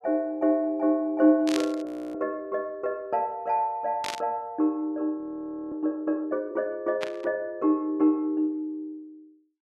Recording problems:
static burst; at 1.5 s, at 4 s and at 7 s; peak -1 dB vs average level
frozen audio; at 2 s and at 5 s for 0.5 s

